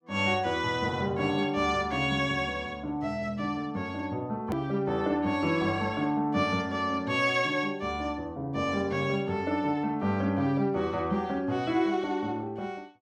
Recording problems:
click at an edit; at 4.5 s

